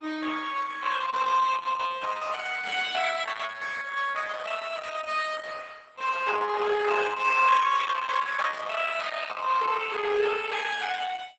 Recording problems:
lossy codec; Opus, log-spectral distance 6 dB, nothing above 7.8 kHz

